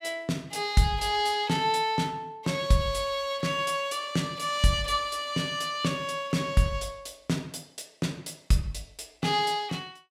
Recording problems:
none

